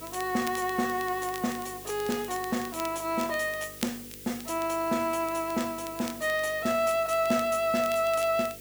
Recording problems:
hum; 50 Hz, harmonics up to 500 Hz, SNR 22 dB
hiss; slope +4 dB per octave, SNR 14 dB
crackling; vinyl, SNR 17 dB

